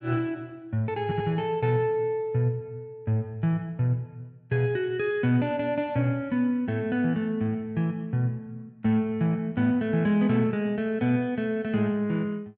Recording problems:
stutter; at 1 s

